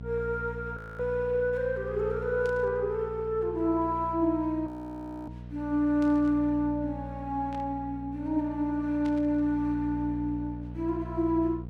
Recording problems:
hum; 60 Hz, harmonics up to 540 Hz, SNR 12 dB
frozen audio; at 1 s and at 4.5 s for 0.5 s
burst of static; 4 times, first at 2.5 s; peak -14 dB vs average level

